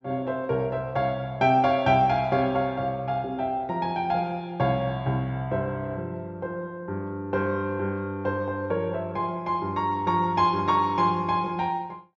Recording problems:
low-pass filter; nothing above 8 kHz

